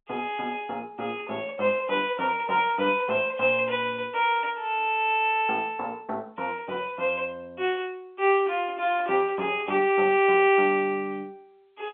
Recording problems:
phone line; 260 Hz to 3.3 kHz, G.711

